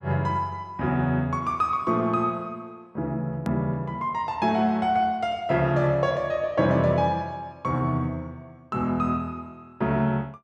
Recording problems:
edit click; at 3.5 s

